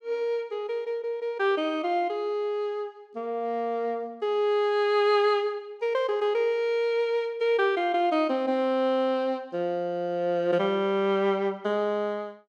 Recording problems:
none

